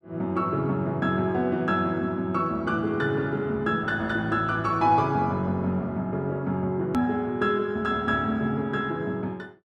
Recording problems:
click at an edit; at 7 s

